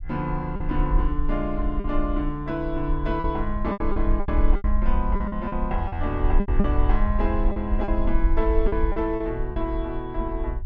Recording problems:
rumble; below 50 Hz, SNR 1 dB
lost packets; 9% of the sound replaced, filled with repeated pitch periods

